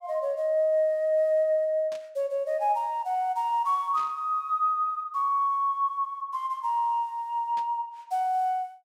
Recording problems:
burst of static; at 2 s, at 4 s and at 7.5 s; peak -15 dB vs average level

